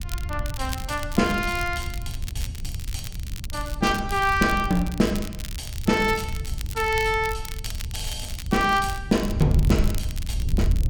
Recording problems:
wind noise; below 90 Hz, SNR 7 dB
crackling; vinyl, SNR 14 dB

